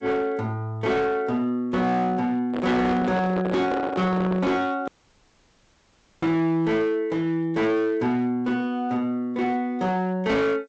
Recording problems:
lossy codec; G.722, log-spectral distance 2 dB
distorted audio; hard clipping, signal-to-distortion ratio 10 dB
microphone handling noise; from 2.5 to 4.5 s; peak -2 dB vs average level
dropout; at 5 s for 1.5 s

